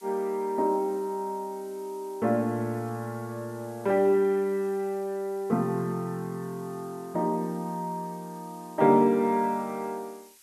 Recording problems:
hiss; slope +3 dB per octave, SNR 26 dB

